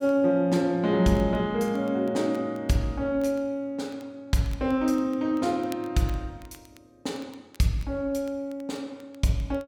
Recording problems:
crackle; vinyl, SNR 29 dB

